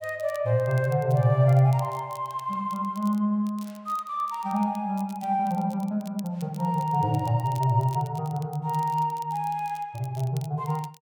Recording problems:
crackling; vinyl, SNR 25 dB

